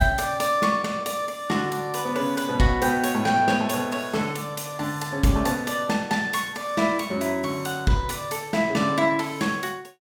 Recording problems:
none

